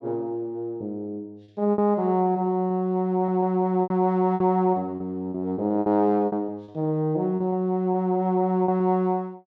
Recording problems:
lost packets; 8% of the sound replaced, filled with repeated pitch periods

